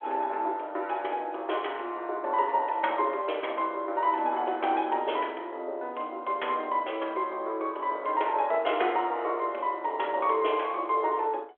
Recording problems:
telephone audio; 320 Hz to 3.4 kHz, G.726

